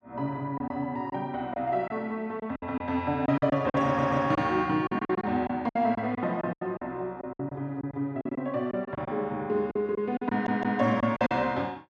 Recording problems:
packet loss; 11% of the sound replaced, filled with silence
audio stuttering; at 4 s and at 10 s

